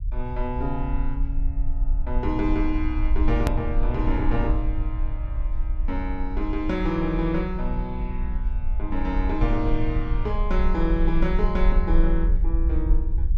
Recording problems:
low-frequency rumble; below 50 Hz, strongest tone 24 Hz, SNR 0 dB
edit click; at 3.5 s

